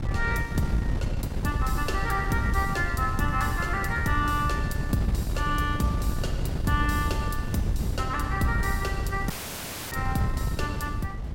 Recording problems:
wind noise; below 140 Hz, SNR 2 dB
dropout; at 9.5 s for 0.5 s

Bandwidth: 16.5 kHz